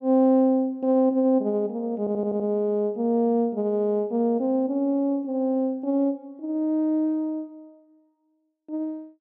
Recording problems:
audio stuttering; at 2 s

